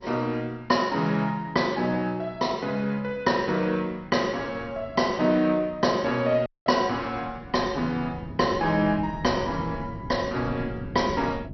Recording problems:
codec artefacts; MP2, log-spectral distance 2 dB, nothing above 5.8 kHz
wind noise; below 260 Hz, SNR 15 dB
dropout; at 6.5 s

